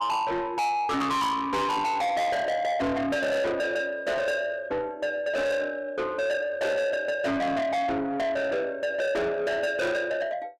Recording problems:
distortion; soft clipping, signal-to-distortion ratio 6 dB

